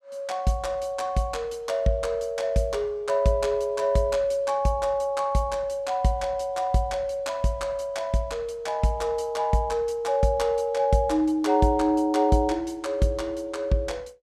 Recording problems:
none

